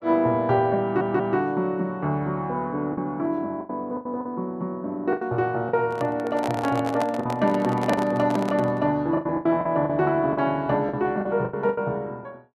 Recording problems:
lost packets; 8% of the sound replaced, filled with the last packet
audio stuttering; at 1 s
microphone handling noise; from 6 to 9 s; peak 0 dB vs average level

